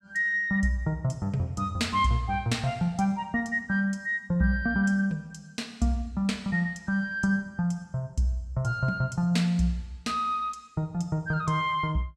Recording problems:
none

